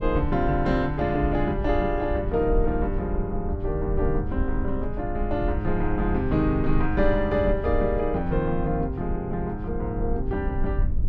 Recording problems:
rumble; below 70 Hz, SNR 5 dB

